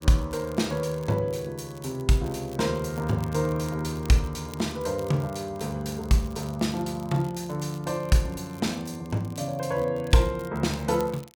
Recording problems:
crackle; vinyl, SNR 23 dB

